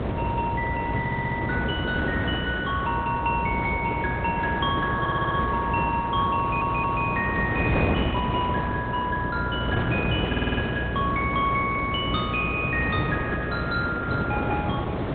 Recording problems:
treble cut off; nothing above 3.7 kHz
codec artefacts; Opus, then G.722, log-spectral distance 3 dB
mains hum; 60 Hz, harmonics up to 660 Hz, SNR 7 dB
wind on the microphone; below 610 Hz, SNR 3 dB
audio stuttering; 4 times, first at 1 s

